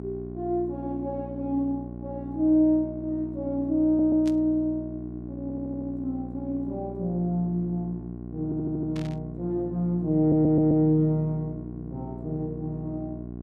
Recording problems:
mains hum; 60 Hz, harmonics up to 780 Hz, SNR 11 dB
audio stuttering; 4 times, first at 4 s
burst of static; at 4.5 s and at 9 s; peak -12 dB vs average level

